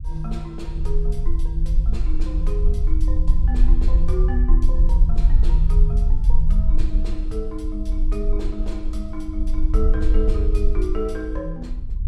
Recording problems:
low-frequency rumble; below 46 Hz, SNR -8 dB

